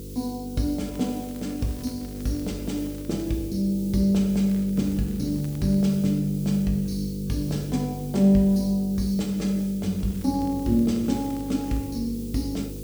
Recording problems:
hum; 50 Hz, harmonics up to 500 Hz, SNR 13 dB
hiss; SNR 20 dB
crackling; from 1 to 3 s, from 4.5 to 6 s and from 10 to 12 s; loose cable, SNR 27 dB

